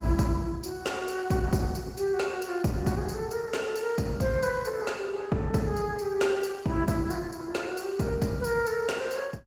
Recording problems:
codec artefacts; Opus, log-spectral distance 4 dB, nothing above 19 kHz

